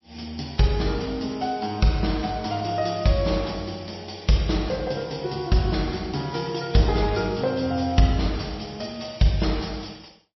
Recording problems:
codec artefacts; MP3, log-spectral distance 8 dB, nothing above 5.7 kHz

